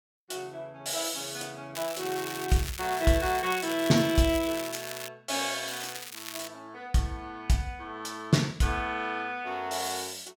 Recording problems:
crackle; from 2 to 5 s and at 5.5 s; loose cable, SNR 9 dB

